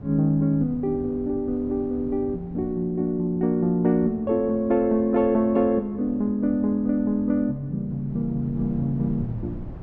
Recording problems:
wind noise; below 200 Hz, SNR 18 dB

